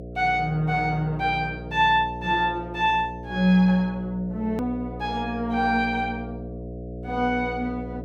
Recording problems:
hum; 60 Hz, harmonics up to 720 Hz, SNR 12 dB
hard cut with a click; at 4.5 s

